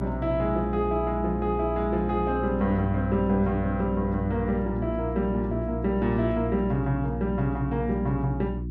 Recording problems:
electrical hum; 60 Hz, harmonics up to 360 Hz, SNR 6 dB

